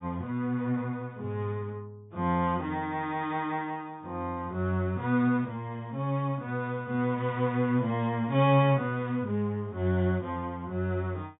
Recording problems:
treble cut off; nothing above 4 kHz

